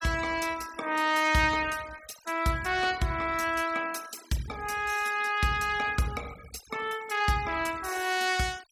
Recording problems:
noise reduction artefacts; signal-to-artefact ratio 18 dB

